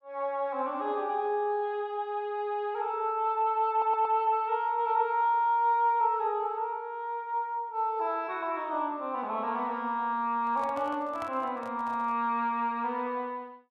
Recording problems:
audio stuttering; at 3.5 s
handling noise; from 10 to 12 s; peak -8 dB vs average level

